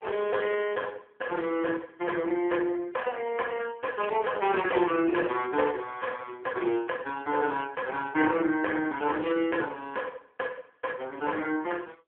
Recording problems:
telephone audio; 280 Hz to 3.3 kHz, AMR-NB

